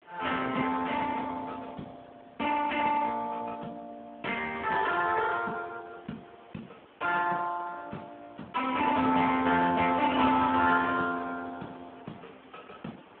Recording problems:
phone line; 190 Hz to 3.3 kHz, Speex
hiss; SNR 27 dB

